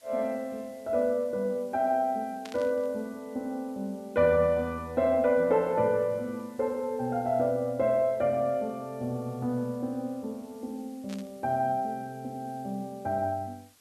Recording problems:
hiss; slope +1 dB per octave, SNR 29 dB
burst of static; at 2.5 s and at 11 s; peak -10 dB vs average level

